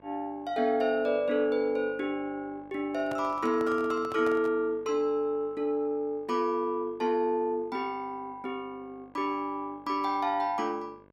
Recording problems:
hum; 50 Hz, harmonics up to 2.7 kHz, SNR 27 dB
microphone handling noise; from 3 to 4.5 s; peak -7 dB vs average level

